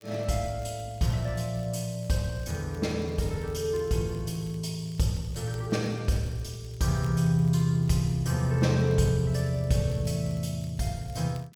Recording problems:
crackle; vinyl, SNR 30 dB

